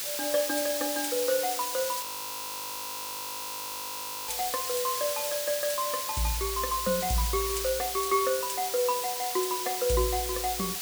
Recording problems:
hiss; slope +2 dB per octave, SNR 1 dB
audio freezing; at 2 s for 2.5 s

